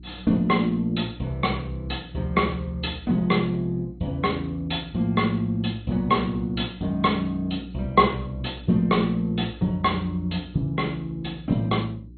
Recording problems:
lossy codec; MP2, log-spectral distance 4 dB, nothing above 4.2 kHz
hum; 60 Hz, harmonics up to 360 Hz, SNR 19 dB

